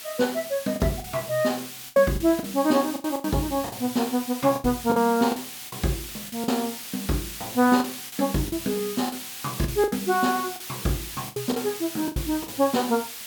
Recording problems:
hiss; slope +2 dB per octave, SNR 9 dB
lost packets; 10% of the sound replaced, filled with the last packet

